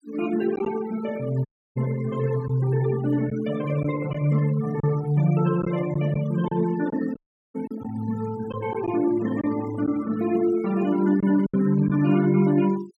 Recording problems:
noise reduction artefacts; signal-to-artefact ratio 18 dB
packet loss; 3% of the sound replaced, filled with silence
audio cutting out; at 1.5 s and at 7 s

